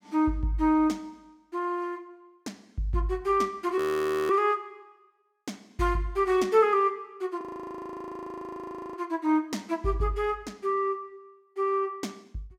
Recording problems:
audio freezing; at 4 s for 0.5 s and at 7.5 s for 1.5 s

